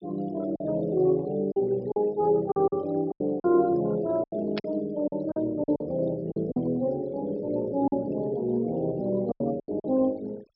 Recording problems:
low-pass filter; nothing above 5.5 kHz
noise reduction artefacts; signal-to-artefact ratio 25 dB
packet loss; 9% of the sound replaced, filled with silence
static burst; at 4.5 s; peak -4 dB vs average level

